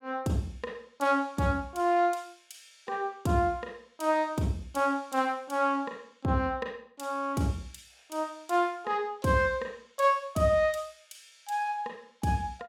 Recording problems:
none

